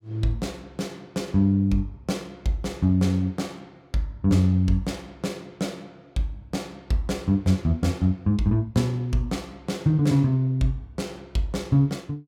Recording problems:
none

